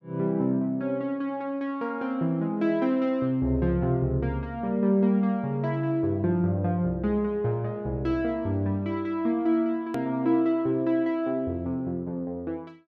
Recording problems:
edit click; at 10 s

